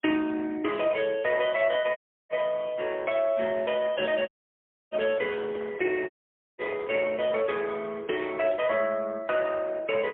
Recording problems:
phone line; 260 Hz to 3.3 kHz, AMR-NB, then MP3
audio cutting out; at 2 s, at 4.5 s for 0.5 s and at 6 s
microphone handling noise; from 3.5 to 8 s; peak -9 dB vs average level

